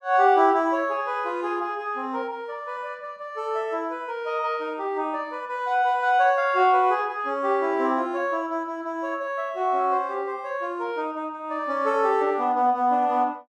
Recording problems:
none

